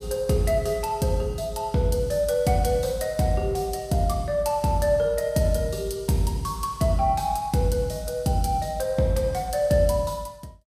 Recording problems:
none

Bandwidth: 15.5 kHz